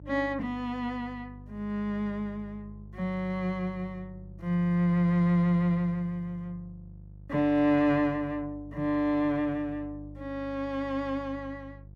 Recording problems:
electrical hum; 50 Hz, harmonics up to 500 Hz, SNR 18 dB

